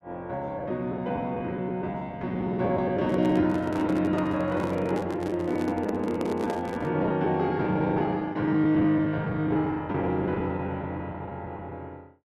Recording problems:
packet loss; 12% of the sound replaced, filled with the last packet
microphone handling noise; from 3 to 7 s; peak -2 dB vs average level

